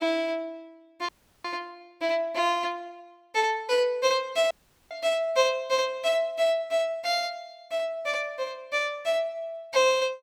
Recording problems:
dropout; at 1 s and at 4.5 s

